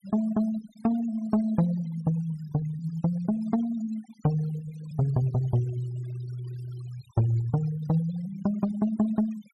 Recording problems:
noise reduction artefacts; signal-to-artefact ratio 21 dB

